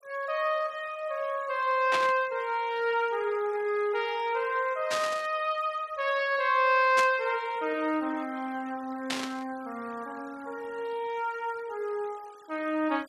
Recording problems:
denoising artefacts; signal-to-artefact ratio 24 dB
static burst; 4 times, first at 2 s; peak +2 dB vs average level

